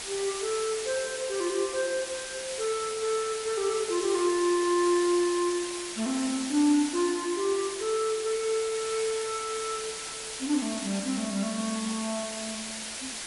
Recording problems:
lossy compression; MP3, log-spectral distance 11 dB
background hiss; slope +1 dB per octave, SNR 6 dB

